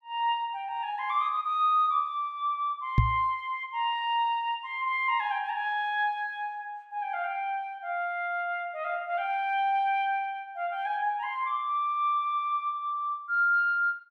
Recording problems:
knock on the microphone; at 3 s; peak +9 dB vs average level

